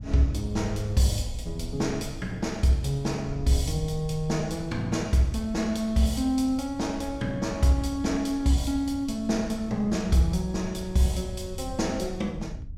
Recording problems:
wind on the microphone; below 96 Hz, SNR 13 dB

